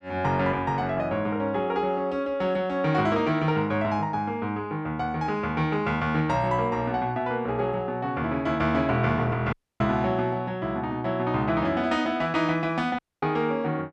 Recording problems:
dropout; at 9.5 s and at 13 s

